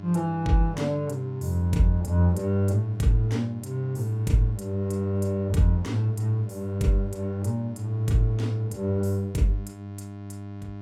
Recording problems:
hum; 50 Hz, harmonics up to 1.1 kHz, SNR 15 dB

